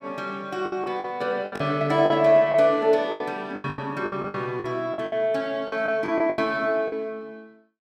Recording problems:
packet loss; 14% of the sound replaced, filled with the last packet

